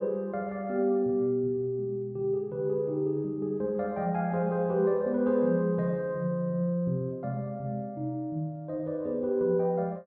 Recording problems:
none

